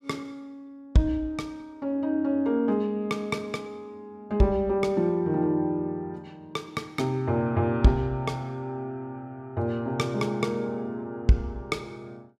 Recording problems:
none

